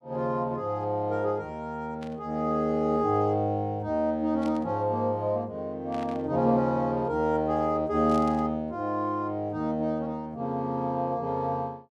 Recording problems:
burst of static; 4 times, first at 2 s; peak -14 dB vs average level

